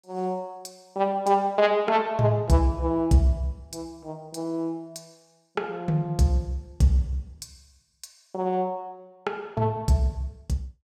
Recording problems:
none

